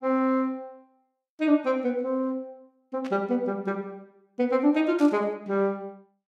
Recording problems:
burst of static; at 3 s and at 5 s; peak -12 dB vs average level

